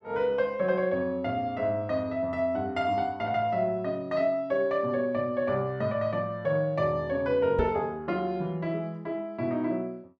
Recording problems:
microphone thump; at 7.5 s; peak +2 dB vs average level

